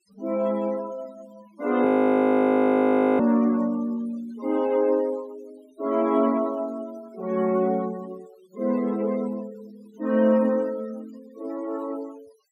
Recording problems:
denoising artefacts; signal-to-artefact ratio 24 dB
frozen audio; at 2 s for 1.5 s

